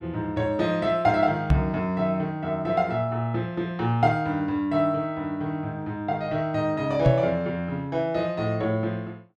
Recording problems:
microphone thump; at 1.5 s and at 7 s; peak +8 dB vs average level

